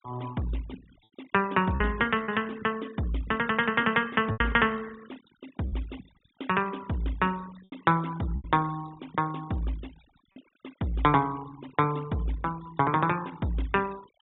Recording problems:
low-pass filter; nothing above 3.7 kHz
noise reduction artefacts; signal-to-artefact ratio 22 dB
packet loss; 3% of the sound replaced, filled with repeated pitch periods

